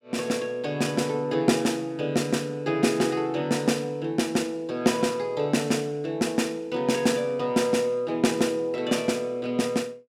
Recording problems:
none

